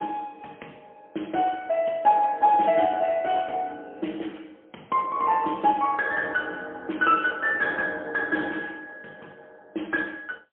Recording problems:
phone line; 240 Hz to 3.3 kHz, AMR-NB, then MP3

